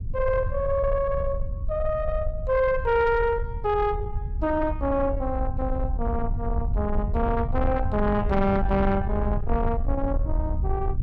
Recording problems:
distorted audio; soft clipping, signal-to-distortion ratio 11 dB
rumble; below 84 Hz, SNR 4 dB

